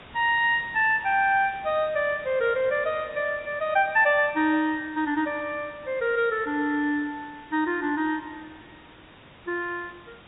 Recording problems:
treble missing; nothing above 4 kHz
hiss; SNR 23 dB

